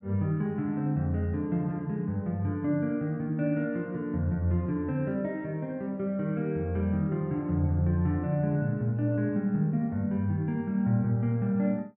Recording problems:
none

